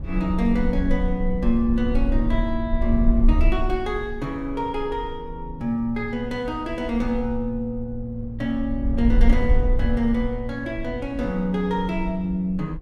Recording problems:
wind on the microphone; below 52 Hz, SNR 2 dB

